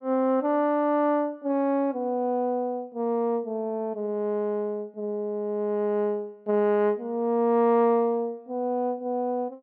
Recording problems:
none

